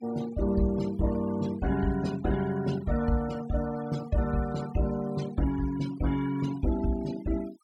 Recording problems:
denoising artefacts; signal-to-artefact ratio 16 dB

